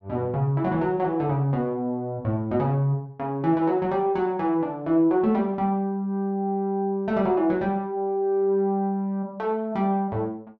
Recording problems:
none

